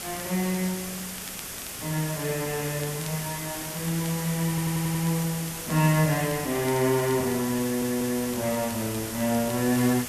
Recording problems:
background hiss; slope -1 dB per octave, SNR 6 dB
wind on the microphone; below 1.1 kHz, SNR 26 dB
crackling; vinyl, SNR 23 dB
audio stuttering; at 4.5 s and at 7.5 s

